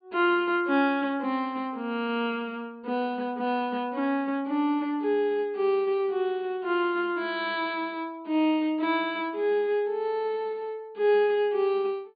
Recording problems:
treble missing; nothing above 4.7 kHz

